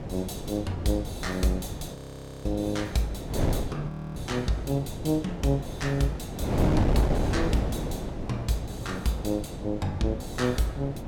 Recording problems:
hum; 50 Hz, harmonics up to 550 Hz, SNR 16 dB
wind on the microphone; below 420 Hz, SNR 3 dB
audio freezing; at 2 s for 0.5 s and at 4 s

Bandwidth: 17 kHz